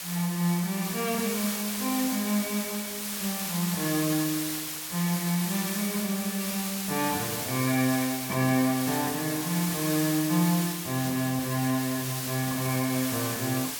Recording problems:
hiss; slope +1 dB per octave, SNR 3 dB

